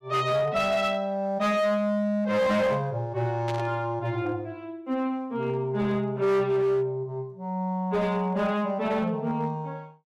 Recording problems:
distorted audio; hard clipping, signal-to-distortion ratio 12 dB
burst of static; at 3.5 s; peak -7 dB vs average level

